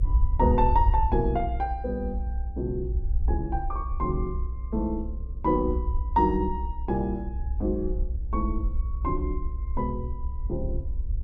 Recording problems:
hum; 50 Hz, harmonics up to 550 Hz, SNR 19 dB
low-frequency rumble; below 64 Hz, SNR 2 dB

